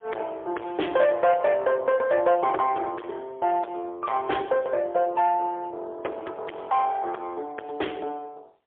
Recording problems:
telephone audio; 320 Hz to 2.9 kHz, AMR-NB, then MP3
distortion; soft clipping, signal-to-distortion ratio 8 dB

